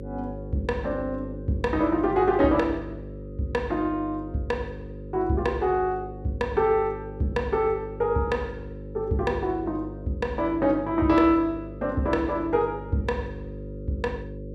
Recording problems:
electrical hum; 50 Hz, harmonics up to 550 Hz, SNR 12 dB

